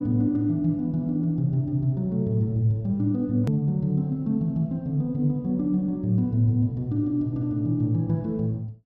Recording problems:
click at an edit; at 3.5 s

